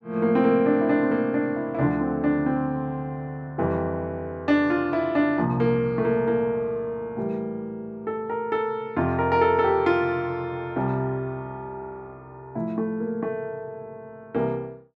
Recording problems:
none

